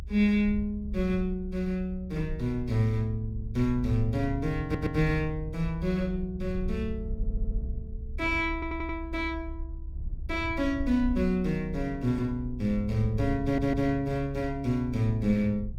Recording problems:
rumble; below 68 Hz, SNR 9 dB
audio stuttering; 4 times, first at 4.5 s

